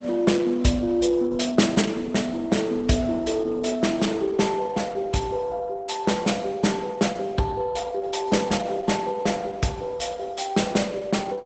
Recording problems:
lossy compression; Opus, log-spectral distance 4 dB, nothing above 8 kHz

